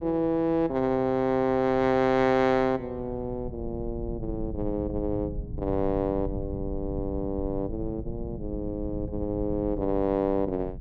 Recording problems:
low-frequency rumble; below 140 Hz, SNR 11 dB

